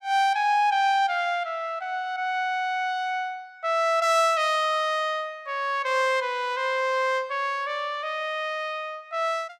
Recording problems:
none

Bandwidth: 16.5 kHz